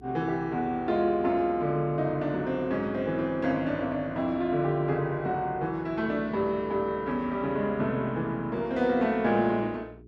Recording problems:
hum; 60 Hz, harmonics up to 420 Hz, SNR 23 dB

